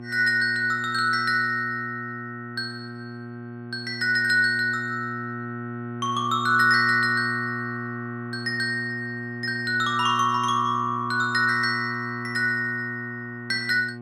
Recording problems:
electrical hum; 60 Hz, harmonics up to 1.4 kHz, SNR 12 dB

